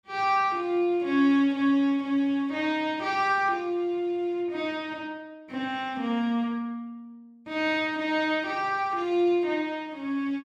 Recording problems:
none

